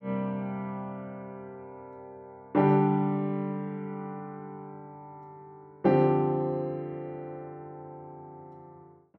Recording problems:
none

